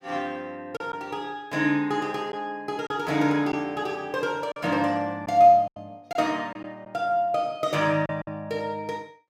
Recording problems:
packet loss; 4% of the sound replaced, filled with silence

